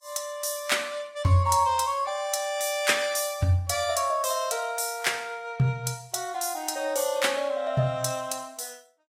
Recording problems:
lossy compression; Vorbis, log-spectral distance 4 dB, nothing above 14.7 kHz

